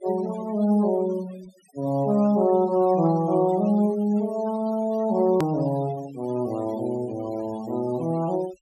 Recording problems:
noise reduction artefacts; signal-to-artefact ratio 20 dB
hard cut with a click; at 5.5 s

